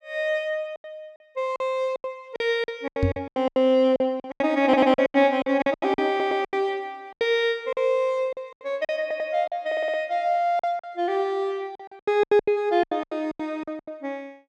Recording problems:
packet loss; 16% of the sound replaced, filled with silence
knock on the microphone; at 3 s; peak +4 dB vs average level
stutter; 4 times, first at 4.5 s

